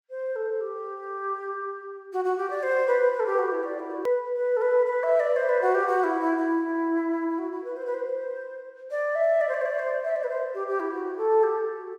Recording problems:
click at an edit; at 4 s

